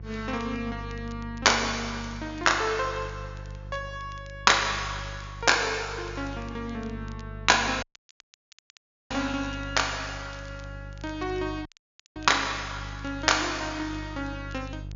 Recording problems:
treble missing; nothing above 7 kHz
hum; 50 Hz, harmonics up to 500 Hz, SNR 13 dB
crackle; vinyl, SNR 28 dB
audio cutting out; at 8 s for 1.5 s and at 12 s for 0.5 s

